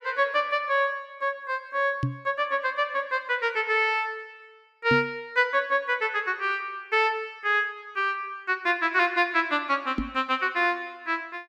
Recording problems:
knock on the microphone; at 2 s, at 5 s and at 10 s; peak +2 dB vs average level

